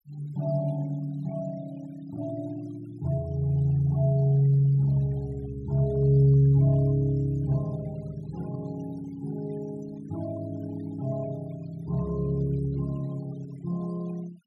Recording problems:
noise reduction artefacts; signal-to-artefact ratio 26 dB

